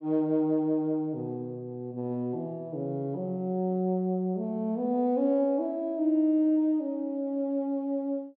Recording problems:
none

